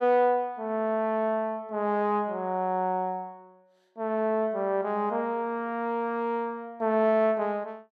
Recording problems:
none

